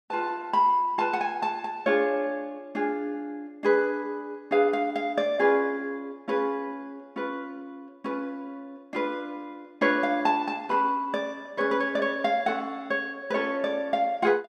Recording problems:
none

